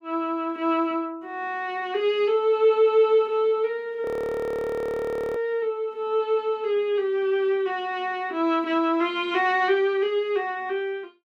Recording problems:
audio freezing; at 4 s for 1.5 s

